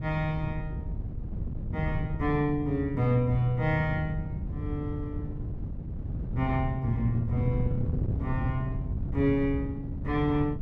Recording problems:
wind on the microphone; below 150 Hz, SNR 4 dB

